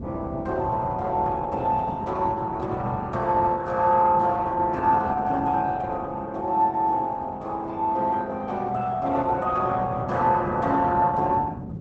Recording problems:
lossy compression; Opus, log-spectral distance 2 dB, nothing above 7.6 kHz
wind on the microphone; below 230 Hz, SNR 12 dB

